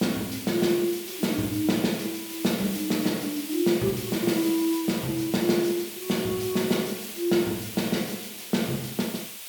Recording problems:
hiss; SNR 9 dB

